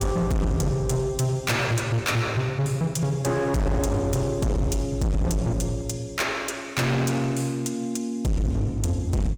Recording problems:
distorted audio; hard clipping, signal-to-distortion ratio 6 dB

